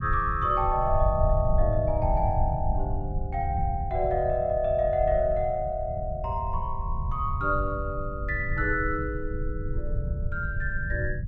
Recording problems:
rumble; below 98 Hz, SNR 4 dB

